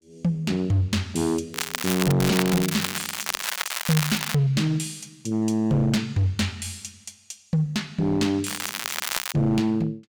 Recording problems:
distortion; hard clipping, signal-to-distortion ratio 11 dB
crackling; at 1.5 s, from 2 to 4.5 s and at 8.5 s; loose cable, SNR 4 dB

